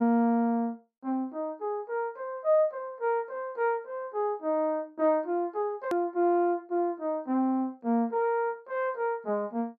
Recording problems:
click at an edit; at 6 s

